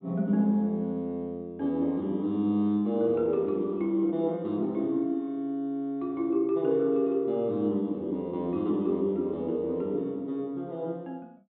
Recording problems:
low-pass filter; nothing above 4 kHz

